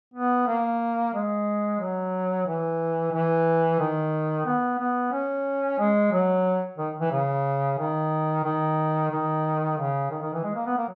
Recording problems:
none

